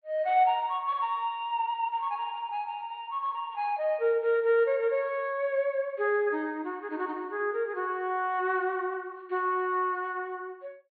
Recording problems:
treble cut off; nothing above 4.3 kHz

